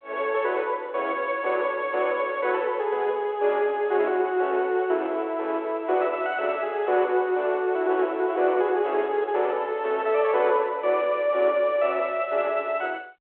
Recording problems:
telephone audio; 340 Hz to 3.5 kHz, G.726

